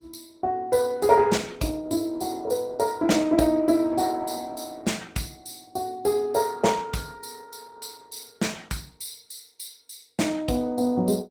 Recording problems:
lossy codec; Opus, log-spectral distance 5 dB, nothing above 19 kHz

